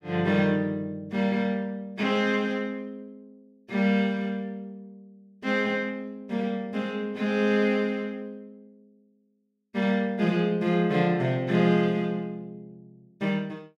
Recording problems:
none

